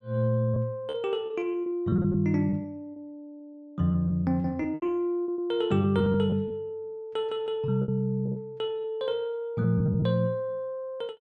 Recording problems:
lost packets; 11% of the sound replaced, filled with repeated pitch periods

